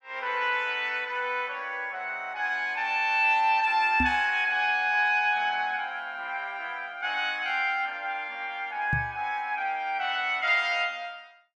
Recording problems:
microphone bump; at 4 s and at 9 s; peak 0 dB vs average level

